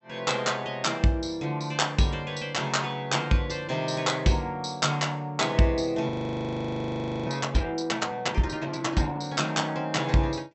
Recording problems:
low-pass filter; nothing above 7.9 kHz
frozen audio; at 6 s for 1 s

